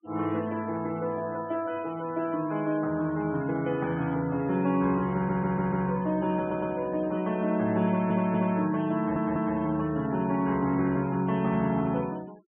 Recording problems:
treble cut off; nothing above 3.4 kHz
denoising artefacts; signal-to-artefact ratio 22 dB
stutter; 4 times, first at 5 s

